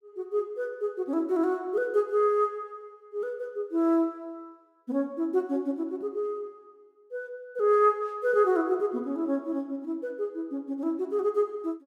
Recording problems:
none

